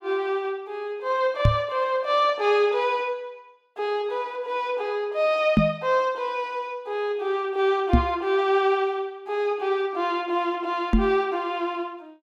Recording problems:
knock on the microphone; 4 times, first at 1.5 s; peak +10 dB vs average level

